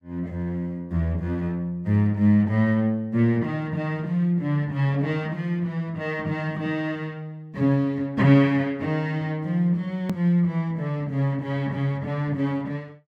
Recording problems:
hard cut with a click; at 10 s

